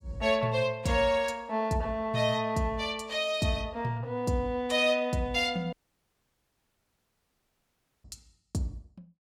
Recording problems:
dropout; at 5.5 s for 2.5 s

